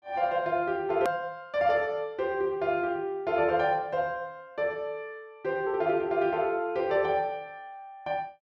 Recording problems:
click at an edit; at 1 s

